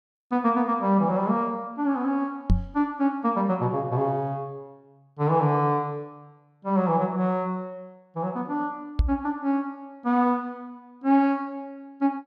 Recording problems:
knock on the microphone; at 2.5 s and at 9 s; peak +7 dB vs average level

